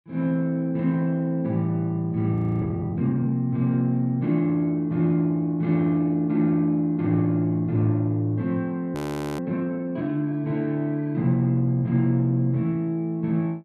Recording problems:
frozen audio; at 2.5 s and at 9 s

